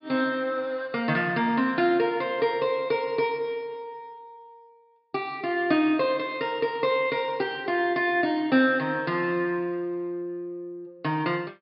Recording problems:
treble cut off; nothing above 5.5 kHz

